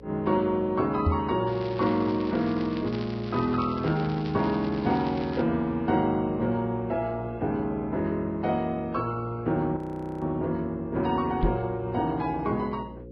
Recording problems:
lossy compression; Vorbis, log-spectral distance 2 dB, nothing above 13.1 kHz
hum; 60 Hz, harmonics up to 540 Hz, SNR 18 dB
microphone thump; at 1 s and at 11 s; peak +5 dB vs average level
crackling; from 1.5 to 5.5 s; loose cable, SNR 19 dB
frozen audio; at 10 s

